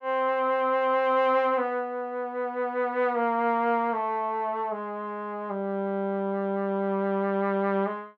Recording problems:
none

